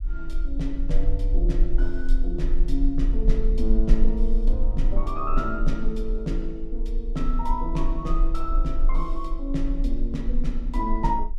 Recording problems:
rumble; below 34 Hz, strongest tone 20 Hz, SNR -3 dB

